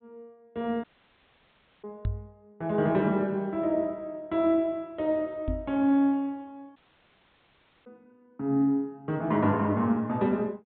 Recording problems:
low-pass filter; nothing above 4 kHz
audio cutting out; at 1 s for 1 s and at 7 s for 1 s
knock on the microphone; at 2 s and at 5.5 s; peak 0 dB vs average level

